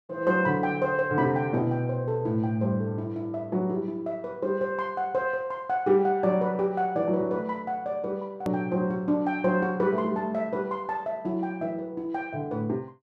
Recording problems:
click at an edit; at 8.5 s

